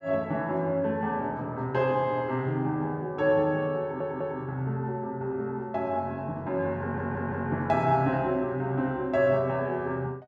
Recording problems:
audio stuttering; at 4 s and at 7 s

